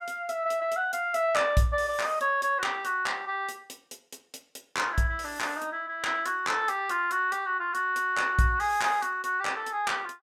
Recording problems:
none

